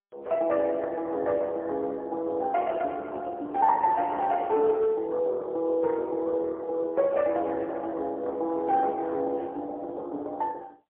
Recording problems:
phone line; 300 Hz to 3.6 kHz, AMR-NB, then MP3

